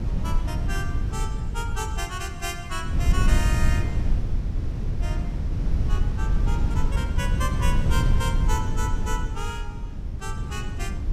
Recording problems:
wind on the microphone; below 96 Hz, SNR -7 dB

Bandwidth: 15.5 kHz